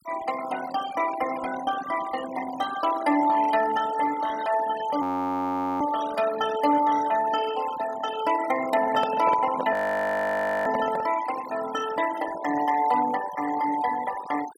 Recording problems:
noise reduction artefacts; signal-to-artefact ratio 13 dB
frozen audio; at 5 s for 1 s and at 9.5 s for 1 s
handling noise; from 8.5 to 11 s; peak -1 dB vs average level

